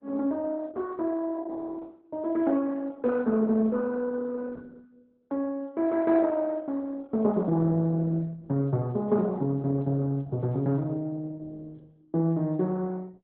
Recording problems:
lossy codec; Opus, log-spectral distance 2 dB

